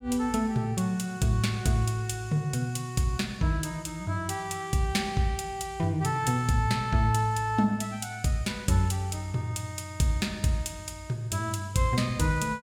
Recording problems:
none

